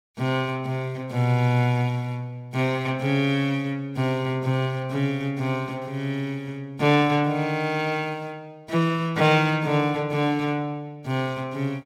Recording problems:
none

